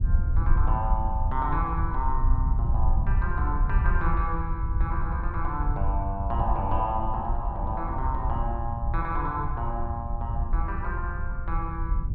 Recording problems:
wind noise; below 72 Hz, SNR -2 dB

